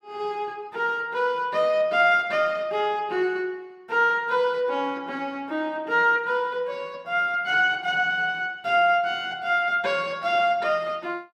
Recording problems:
none

